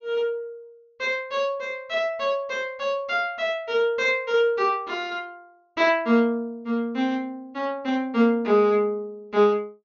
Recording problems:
treble cut off; nothing above 6.8 kHz

